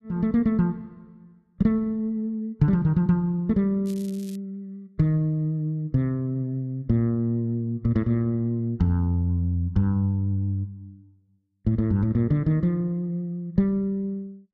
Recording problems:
crackling; at 4 s; loose cable, SNR 24 dB

